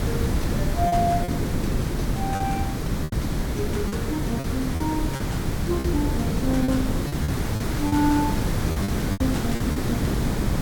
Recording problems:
background hiss; slope -3 dB per octave, SNR 5 dB
wind noise; below 260 Hz, SNR -1 dB
lost packets; 8% of the sound replaced, filled with repeated pitch periods

